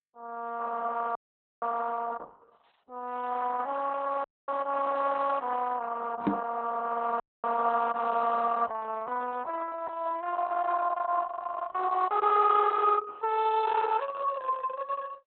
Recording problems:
codec artefacts; AAC, then Opus, log-spectral distance 4 dB, nothing above 4 kHz
dropout; at 1 s, at 4 s and at 7 s
microphone thump; at 6.5 s; peak +3 dB vs average level

